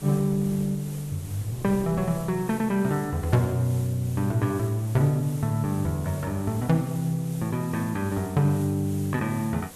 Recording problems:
background hiss; SNR 18 dB
wind on the microphone; below 290 Hz, SNR 23 dB

